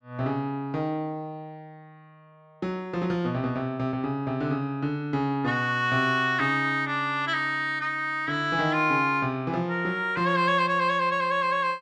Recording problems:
none

